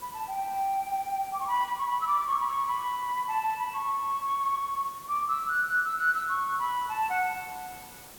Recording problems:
background hiss; slope -3 dB per octave, SNR 18 dB

